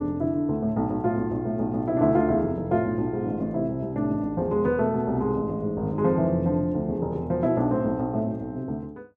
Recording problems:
none

